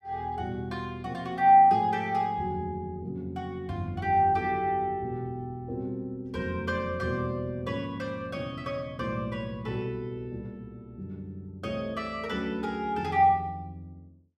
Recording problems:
none

